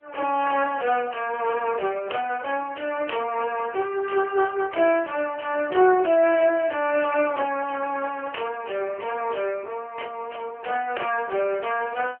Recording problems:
phone line; 320 Hz to 2.8 kHz, AMR-NB

